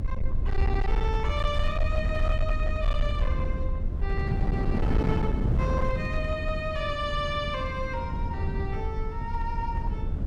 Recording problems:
distorted audio; hard clipping, signal-to-distortion ratio 11 dB
rumble; below 74 Hz, SNR -1 dB
wind on the microphone; below 200 Hz, SNR 0 dB

